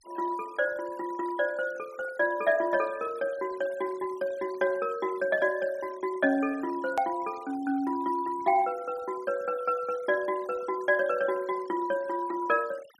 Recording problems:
noise reduction artefacts; signal-to-artefact ratio 23 dB
hard cut with a click; at 7 s

